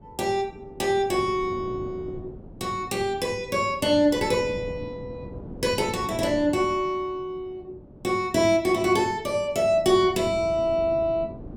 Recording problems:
wind on the microphone; below 330 Hz, SNR 17 dB

